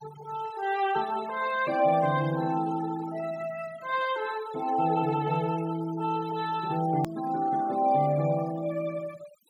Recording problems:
noise reduction artefacts; signal-to-artefact ratio 18 dB
edit click; at 7 s

